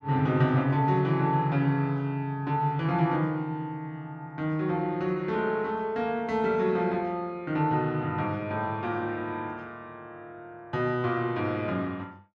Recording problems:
none

